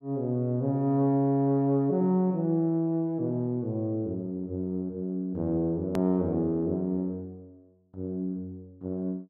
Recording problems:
hard cut with a click; at 6 s

